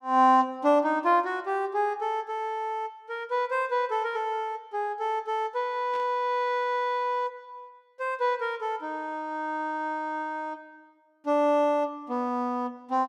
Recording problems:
burst of static; at 6 s; peak -15 dB vs average level

